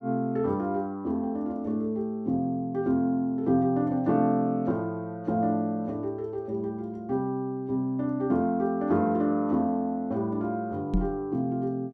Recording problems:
knock on the microphone; at 11 s; peak +4 dB vs average level

